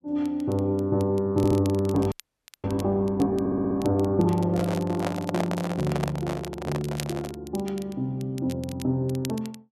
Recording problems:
crackle; vinyl, SNR 19 dB
audio stuttering; at 1.5 s and at 3.5 s
audio freezing; at 2 s for 0.5 s
handling noise; from 4.5 to 7.5 s; peak +1 dB vs average level

